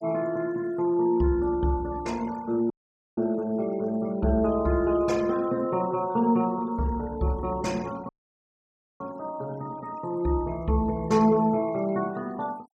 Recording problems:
denoising artefacts; signal-to-artefact ratio 23 dB
dropout; at 2.5 s and at 8 s for 1 s

